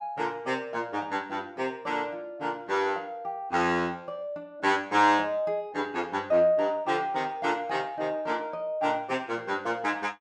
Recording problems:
none

